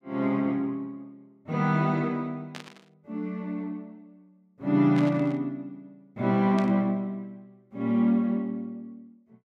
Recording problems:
burst of static; at 2.5 s, at 5 s and at 6.5 s; peak -8 dB vs average level

